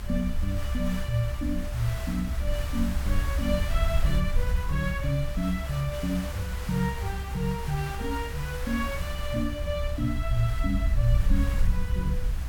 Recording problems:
background hiss; SNR 11 dB
rumble; below 70 Hz, strongest tone 66 Hz, SNR 5 dB
wind on the microphone; below 64 Hz, SNR 1 dB

